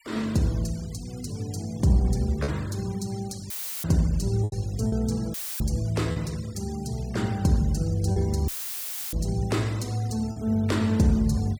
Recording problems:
denoising artefacts; signal-to-artefact ratio 21 dB
lost packets; 2% of the sound replaced, filled with repeated pitch periods
dropout; at 3.5 s, at 5.5 s and at 8.5 s for 0.5 s; filled with static

